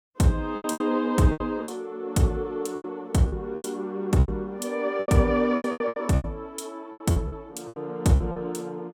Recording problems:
lost packets; 15% of the sound replaced, filled with repeated pitch periods

